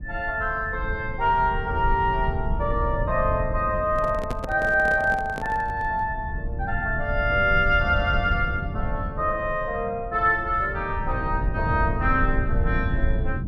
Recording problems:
low-frequency rumble; below 110 Hz, SNR 6 dB
microphone handling noise; from 4 to 6 s; peak -4 dB vs average level

